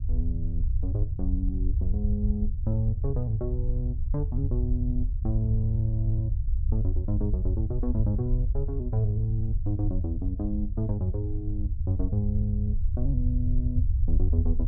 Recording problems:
rumble; below 76 Hz, SNR -1 dB

